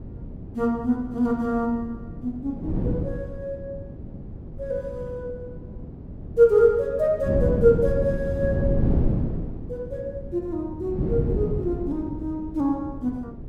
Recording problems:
wind noise; below 240 Hz, SNR 6 dB

